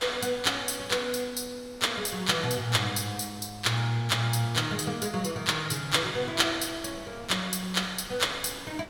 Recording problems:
wind on the microphone; below 2 kHz, SNR 22 dB

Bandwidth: 17 kHz